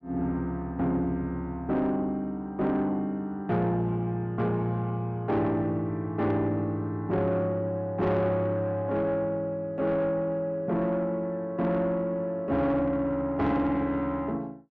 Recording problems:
distorted audio; soft clipping, signal-to-distortion ratio 12 dB

